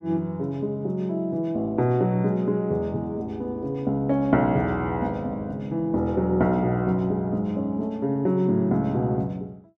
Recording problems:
none

